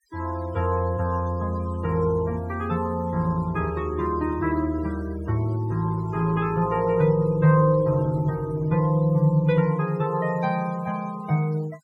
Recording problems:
denoising artefacts; signal-to-artefact ratio 23 dB

